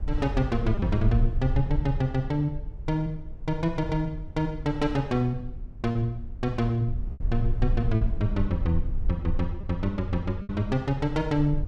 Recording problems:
rumble; below 56 Hz, SNR 6 dB
lost packets; 2% of the sound replaced, filled with repeated pitch periods

